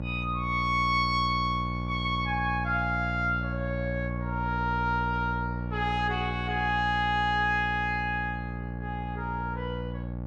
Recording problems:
hum; 60 Hz, harmonics up to 1.1 kHz, SNR 5 dB

